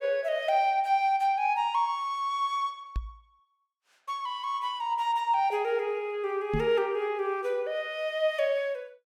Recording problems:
microphone thump; at 3 s and at 6.5 s; peak +1 dB vs average level

